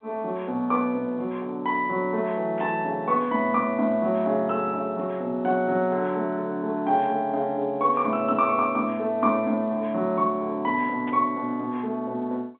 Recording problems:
telephone audio; 190 Hz to 3.6 kHz, G.711
burst of static; at 2.5 s and at 11 s; peak -13 dB vs average level

